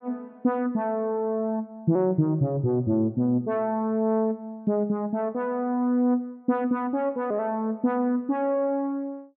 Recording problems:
none

